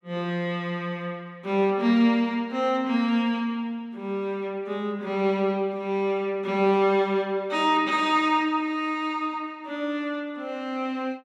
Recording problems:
none

